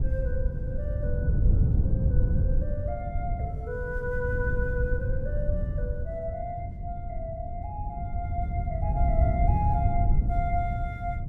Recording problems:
wind on the microphone; below 110 Hz, SNR -6 dB

